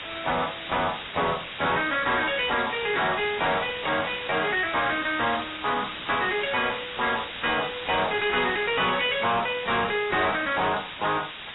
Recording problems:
lossy compression; AAC, log-spectral distance 26 dB, nothing above 3.8 kHz
distorted audio; hard clipping, signal-to-distortion ratio 5 dB
hiss; SNR 10 dB

